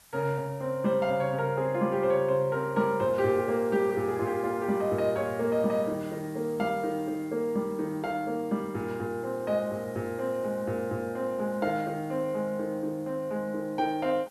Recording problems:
background hiss; slope 0 dB per octave, SNR 26 dB

